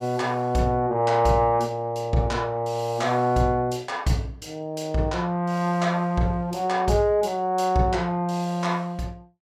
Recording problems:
none

